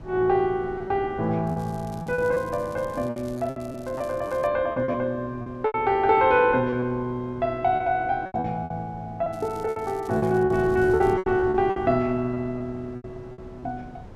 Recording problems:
wind on the microphone; below 380 Hz, SNR 18 dB
packet loss; 11% of the sound replaced, filled with repeated pitch periods
crackle; from 1.5 to 4.5 s and from 9.5 to 11 s; loose cable, SNR 27 dB

